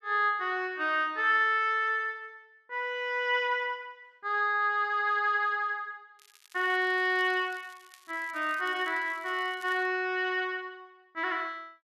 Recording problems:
crackling; from 6 to 10 s; loose cable, SNR 27 dB

